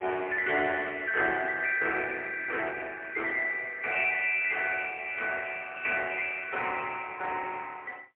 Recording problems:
telephone audio; 280 Hz to 3.3 kHz, AMR-NB, then MP3

